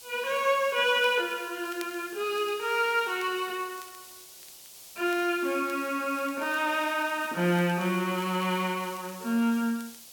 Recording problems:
hiss; SNR 17 dB
crackling; vinyl, SNR 28 dB

